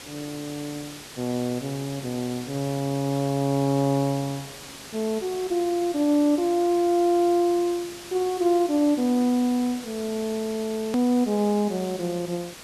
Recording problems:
hiss; slope -1 dB per octave, SNR 15 dB
edit click; at 11 s

